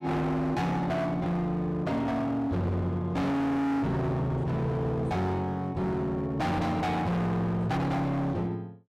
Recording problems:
distorted audio; hard clipping, signal-to-distortion ratio 6 dB

